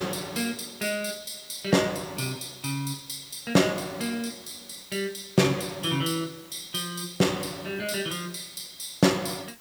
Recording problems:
hiss; slope -1 dB per octave, SNR 21 dB

